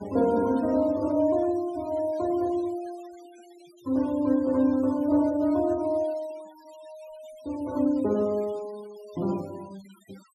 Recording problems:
noise reduction artefacts; signal-to-artefact ratio 25 dB

